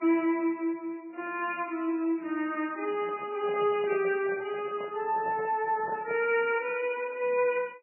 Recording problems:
lossy codec; AAC, then MP3, log-spectral distance 3 dB, nothing above 2.4 kHz
handling noise; from 3 to 6.5 s; peak -8 dB vs average level

